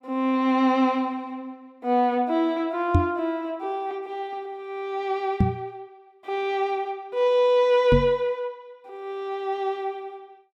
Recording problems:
microphone thump; at 3 s, at 5.5 s and at 8 s; peak +8 dB vs average level

